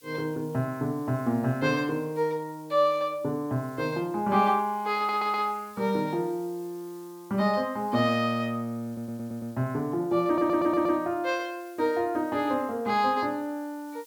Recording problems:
background hiss; slope +4 dB per octave, SNR 27 dB
audio stuttering; at 5 s, at 9 s and at 10 s

